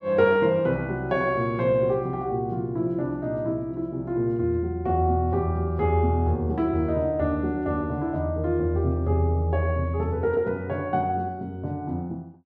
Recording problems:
none

